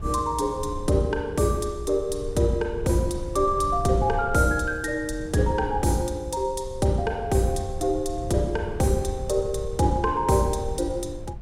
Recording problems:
wind on the microphone; below 100 Hz, SNR 12 dB

